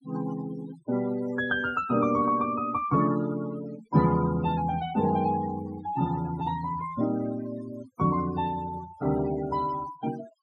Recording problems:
noise reduction artefacts; signal-to-artefact ratio 15 dB

